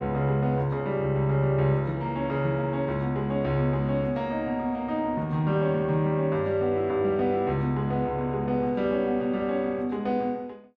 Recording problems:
none

